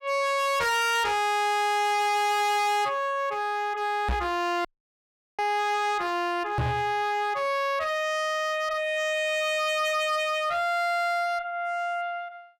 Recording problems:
distorted audio; hard clipping, signal-to-distortion ratio 6 dB
microphone bump; at 4 s and at 6.5 s; peak +2 dB vs average level
audio cutting out; at 4.5 s for 0.5 s

